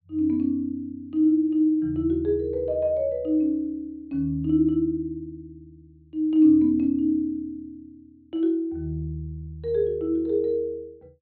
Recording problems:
treble cut off; nothing above 4.4 kHz

